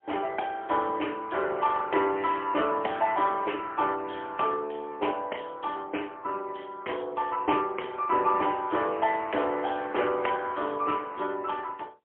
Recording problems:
telephone audio; 300 Hz to 3.2 kHz, AMR-NB, then MP3

